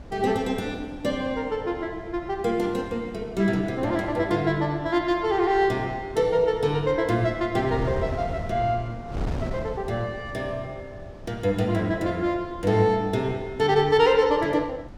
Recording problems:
wind noise; below 290 Hz, SNR 14 dB

